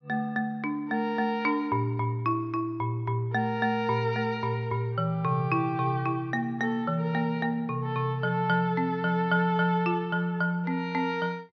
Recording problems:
low-pass filter; nothing above 6.1 kHz

